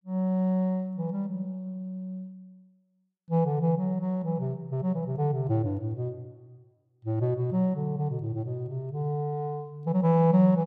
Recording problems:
none

